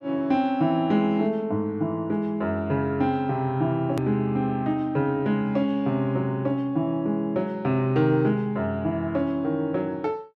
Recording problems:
edit click; at 4 s

